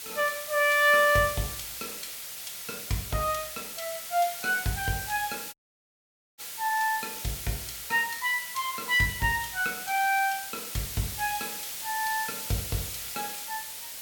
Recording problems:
hiss; SNR 7 dB
dropout; at 5.5 s for 1 s

